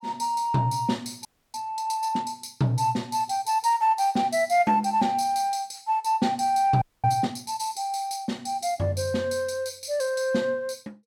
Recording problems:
audio freezing; at 1.5 s and at 7 s

